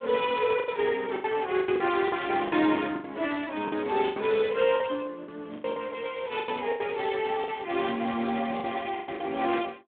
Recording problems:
telephone audio; 170 Hz to 3.7 kHz, Speex
packet loss; 11% of the sound replaced, filled with the last packet
static burst; at 3.5 s, at 5.5 s and at 7.5 s; peak -15 dB vs average level

